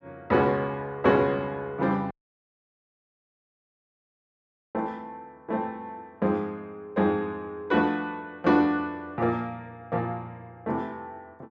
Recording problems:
audio cutting out; at 2 s for 2.5 s

